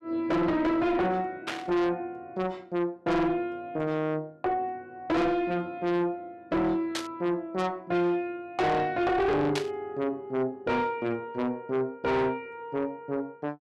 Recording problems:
distorted audio; soft clipping, signal-to-distortion ratio 7 dB
burst of static; at 1.5 s, at 7 s and at 9.5 s; peak +1 dB vs average level

